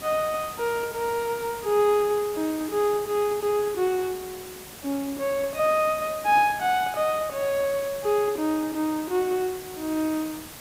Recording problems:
hiss; slope -2 dB per octave, SNR 14 dB

